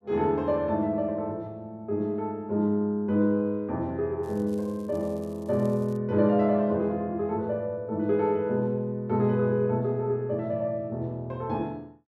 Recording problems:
crackling; from 4 to 6 s; loose cable, SNR 30 dB

